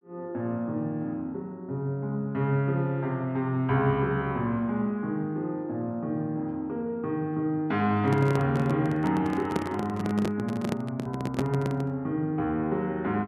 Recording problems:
handling noise; from 8 to 12 s; peak +3 dB vs average level

